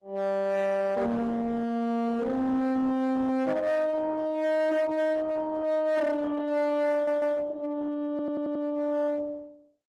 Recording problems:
codec artefacts; Opus, log-spectral distance 2 dB, nothing above 13.1 kHz
distortion; hard clipping, uneven, signal-to-distortion ratio 11 dB
stutter; at 7 s and at 8 s

